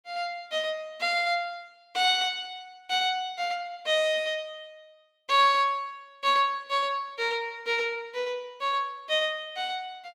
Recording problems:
none

